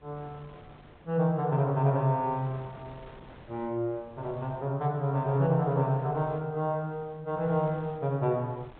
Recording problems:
low-pass filter; nothing above 4 kHz
wind on the microphone; below 980 Hz, SNR 24 dB

